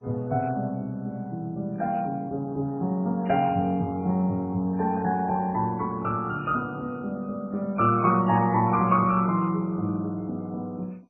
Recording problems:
lossy compression; MP3, then MP2, log-spectral distance 2 dB, nothing above 2.5 kHz

